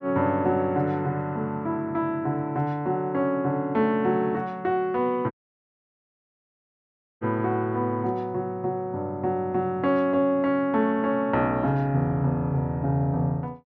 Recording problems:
dropout; at 5.5 s for 2 s

